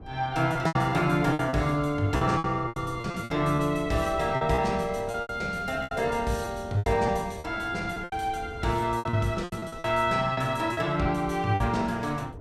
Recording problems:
wind on the microphone; below 300 Hz, SNR 17 dB
packet loss; 12% of the sound replaced, filled with repeated pitch periods

